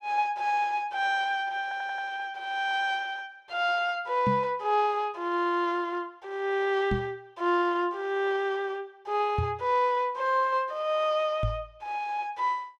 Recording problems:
stutter; at 1.5 s
knock on the microphone; 4 times, first at 4.5 s; peak +3 dB vs average level

